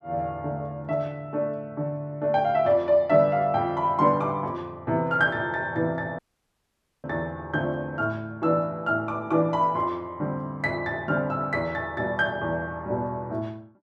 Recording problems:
dropout; at 6 s for 1 s

